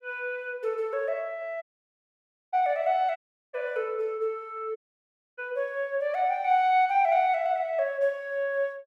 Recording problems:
dropout; at 1.5 s for 1 s, at 3 s and at 5 s for 0.5 s

